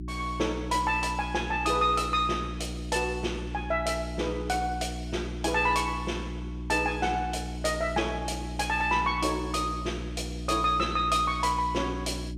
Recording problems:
hum; 60 Hz, harmonics up to 360 Hz, SNR 8 dB

